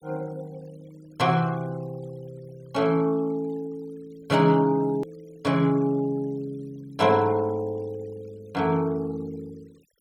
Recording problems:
noise reduction artefacts; signal-to-artefact ratio 28 dB
hard cut with a click; at 5 s

